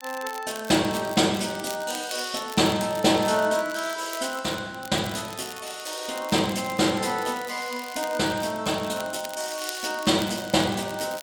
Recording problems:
crackling; vinyl, SNR 15 dB

